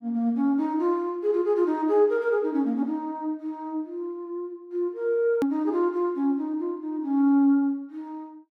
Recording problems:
edit click; at 5.5 s

